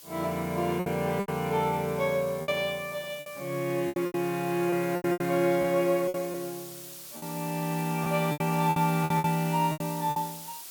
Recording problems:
background hiss; SNR 14 dB
packet loss; 11% of the sound replaced, filled with repeated pitch periods

